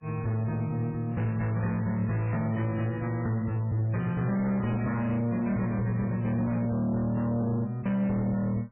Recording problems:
lossy codec; MP3, log-spectral distance 2 dB, nothing above 2.5 kHz
distortion; soft clipping, signal-to-distortion ratio 11 dB

